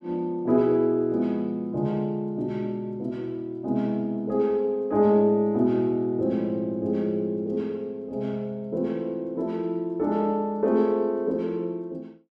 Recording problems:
none

